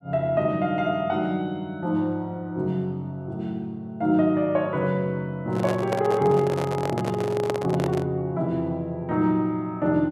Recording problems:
handling noise; from 5.5 to 8 s; peak +1 dB vs average level

